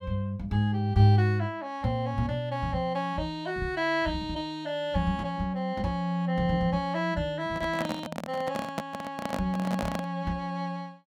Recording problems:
handling noise; from 7.5 to 10 s; peak +1 dB vs average level

